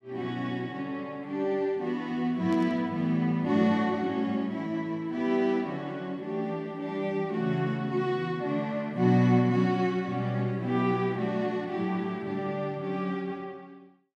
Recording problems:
static burst; at 2.5 s; peak -15 dB vs average level

